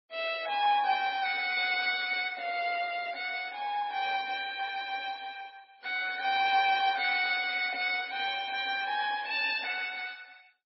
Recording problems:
lossy codec; MP2, then MP3, log-spectral distance 5 dB, nothing above 4.5 kHz

